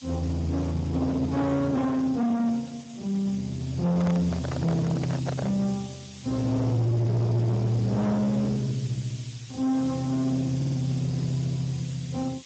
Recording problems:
codec artefacts; Opus, then Speex, log-spectral distance 5 dB, nothing above 17.7 kHz
distorted audio; hard clipping, signal-to-distortion ratio 7 dB
background hiss; SNR 22 dB
handling noise; from 4 to 5.5 s; peak -3 dB vs average level
stutter; at 11 s

